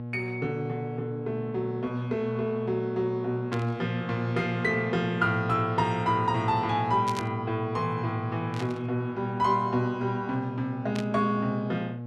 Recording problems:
hum; 60 Hz, harmonics up to 1.1 kHz, SNR 8 dB
burst of static; 4 times, first at 3.5 s; peak -4 dB vs average level

